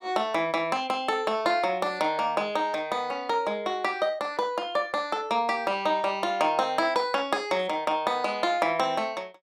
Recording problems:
none

